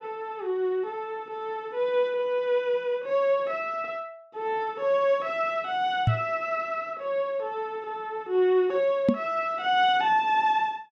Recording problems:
knock on the microphone; at 6 s and at 9 s; peak +7 dB vs average level

